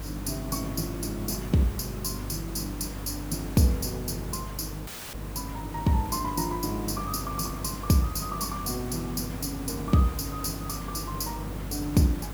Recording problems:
hum; 50 Hz, harmonics up to 600 Hz, SNR 10 dB
hiss; slope -5 dB per octave, SNR 12 dB
dropout; at 5 s; filled with static

